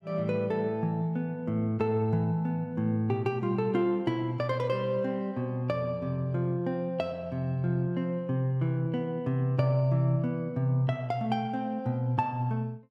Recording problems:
none

